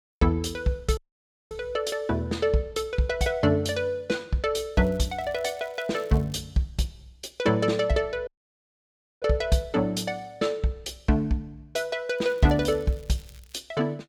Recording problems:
audio cutting out; at 1 s for 0.5 s and at 8.5 s for 1 s
crackling; from 5 to 6.5 s and from 12 to 14 s; loose cable, SNR 27 dB

